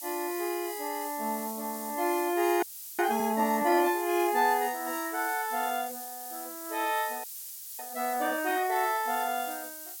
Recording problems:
background hiss; SNR 9 dB
audio freezing; at 2.5 s and at 7 s for 0.5 s

